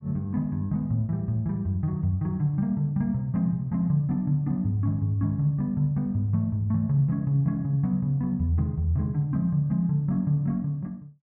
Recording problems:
none

